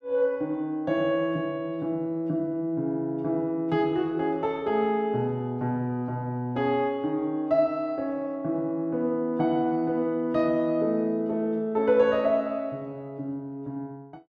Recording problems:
none

